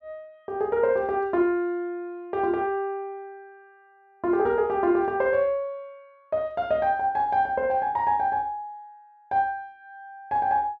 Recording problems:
none

